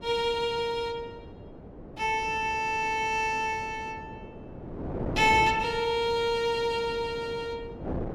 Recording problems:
wind on the microphone; below 490 Hz, SNR 13 dB

